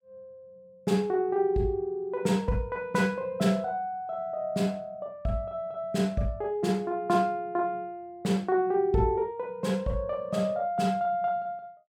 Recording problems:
none

